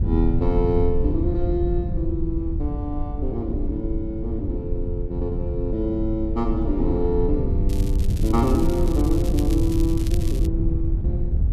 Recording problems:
wind on the microphone; below 90 Hz, SNR -1 dB
crackling; from 7.5 to 10 s; loose cable, SNR 15 dB

